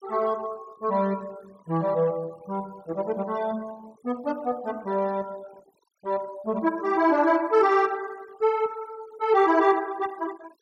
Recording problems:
noise reduction artefacts; signal-to-artefact ratio 24 dB

